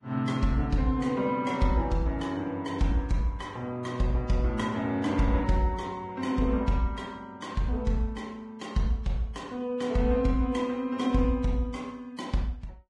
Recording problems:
lossy codec; Vorbis, log-spectral distance 2 dB, nothing above 10.4 kHz

